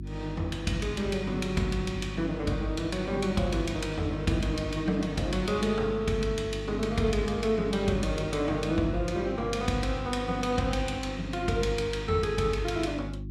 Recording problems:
electrical hum; 50 Hz, harmonics up to 350 Hz, SNR 9 dB

